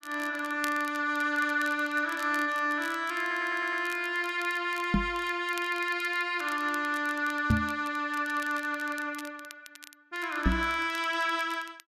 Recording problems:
crackle; vinyl, SNR 19 dB
stutter; at 3 s
microphone bump; at 5 s, at 7.5 s and at 10 s; peak +7 dB vs average level

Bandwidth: 14 kHz